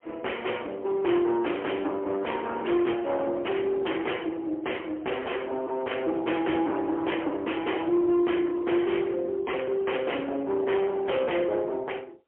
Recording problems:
telephone audio; 260 Hz to 3.3 kHz, AMR-NB, then MP3
distortion; hard clipping, uneven, signal-to-distortion ratio 9 dB

